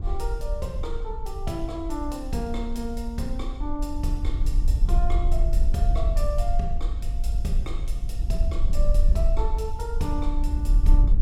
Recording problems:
wind noise; below 50 Hz, SNR -6 dB

